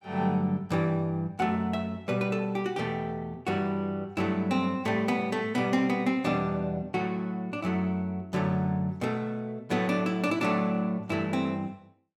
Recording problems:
none

